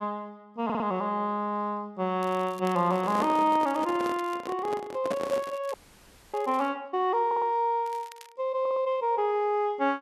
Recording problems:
stutter; at 0.5 s, at 7.5 s and at 8.5 s
crackling; from 2 to 4.5 s, from 5 to 6.5 s and at 8 s; loose cable, SNR 23 dB
microphone handling noise; from 2.5 to 5.5 s; peak 0 dB vs average level
audio freezing; at 5.5 s for 0.5 s

